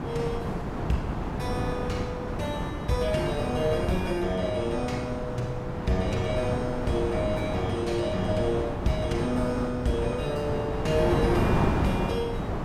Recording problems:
wind on the microphone; below 630 Hz, SNR 1 dB

